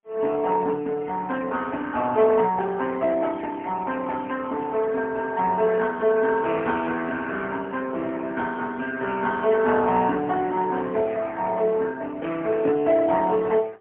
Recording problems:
telephone audio; 260 Hz to 3.2 kHz, AMR-NB, then MP3

